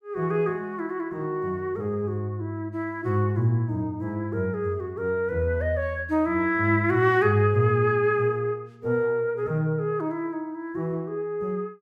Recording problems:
none

